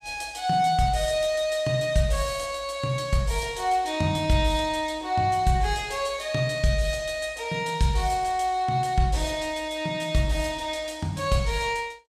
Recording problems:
none

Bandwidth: 14 kHz